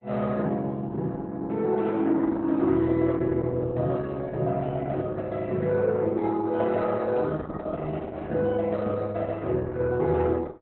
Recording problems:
lossy codec; Opus, log-spectral distance 3 dB, nothing above 4 kHz

